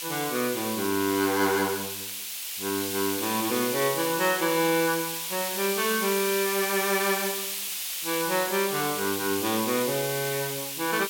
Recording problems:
background hiss; SNR 3 dB
crackling; vinyl, SNR 27 dB

